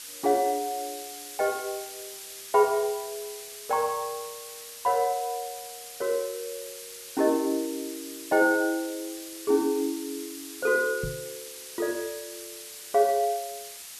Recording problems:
hiss; slope +3 dB per octave, SNR 12 dB
knock on the microphone; at 11 s; peak -3 dB vs average level

